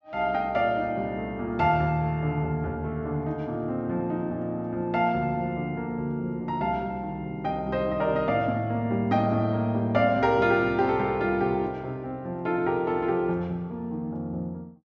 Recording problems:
treble cut off; nothing above 8 kHz

